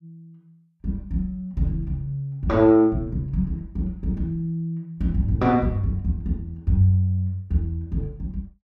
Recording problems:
none

